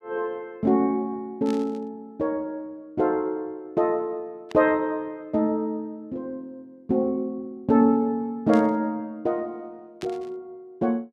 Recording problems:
static burst; 4 times, first at 1.5 s; peak -9 dB vs average level

